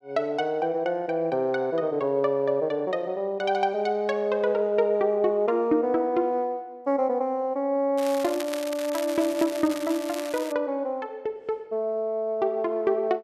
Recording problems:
crackle; from 8 to 11 s; loose cable, SNR 13 dB

